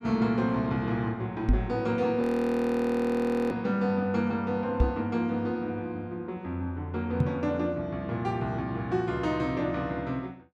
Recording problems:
microphone thump; at 1.5 s, at 5 s and at 7 s; peak +8 dB vs average level
audio freezing; at 2 s for 1.5 s

